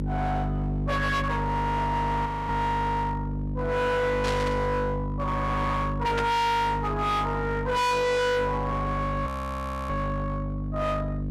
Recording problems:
distortion; hard clipping, uneven, signal-to-distortion ratio 6 dB
mains hum; 50 Hz, harmonics up to 550 Hz, SNR 4 dB
frozen audio; at 2.5 s and at 9.5 s for 0.5 s
static burst; at 4 s and at 6 s; peak -1 dB vs average level

